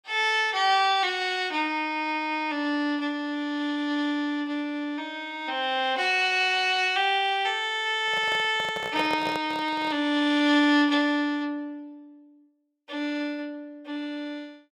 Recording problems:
handling noise; from 8 to 10 s; peak -3 dB vs average level

